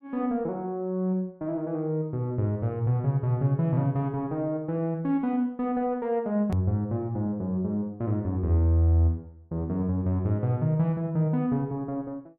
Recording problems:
hard cut with a click; at 6.5 s

